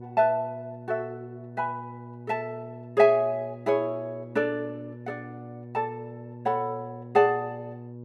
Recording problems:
mains hum; 60 Hz, harmonics up to 840 Hz, SNR 15 dB

